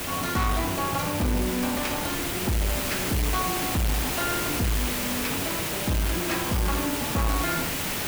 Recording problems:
distortion; hard clipping, signal-to-distortion ratio 11 dB
background hiss; slope -2 dB per octave, SNR 0 dB
wind noise; below 420 Hz, SNR 16 dB

